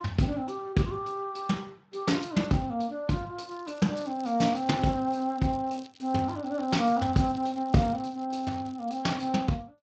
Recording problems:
codec artefacts; Speex, log-spectral distance 6 dB, nothing above 7.3 kHz
crackling; from 3.5 to 9 s; loose cable, SNR 25 dB

